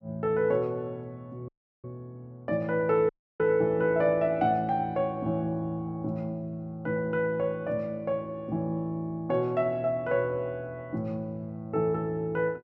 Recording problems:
dropout; at 1.5 s and at 3 s

